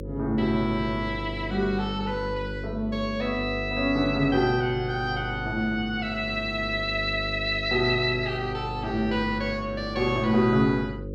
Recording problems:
electrical hum; 50 Hz, harmonics up to 550 Hz, SNR 10 dB

